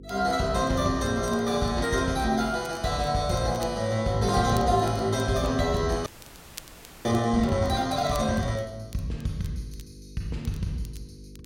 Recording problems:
hum; 50 Hz, harmonics up to 500 Hz, SNR 21 dB
crackling; vinyl, SNR 24 dB
audio freezing; at 6 s for 1 s

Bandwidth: 16 kHz